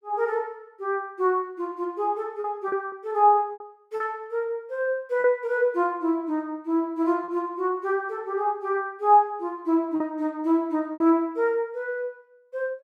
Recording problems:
packet loss; 4% of the sound replaced, filled with repeated pitch periods

